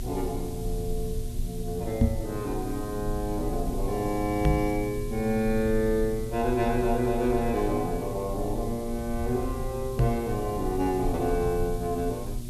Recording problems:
electrical hum; 60 Hz, harmonics up to 600 Hz, SNR 11 dB
hiss; SNR 18 dB
rumble; below 68 Hz, strongest tone 24 Hz, SNR 9 dB
microphone bump; at 2 s, at 4.5 s and at 10 s; peak +9 dB vs average level

